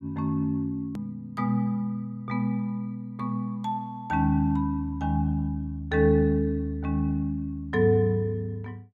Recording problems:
hard cut with a click; at 1 s

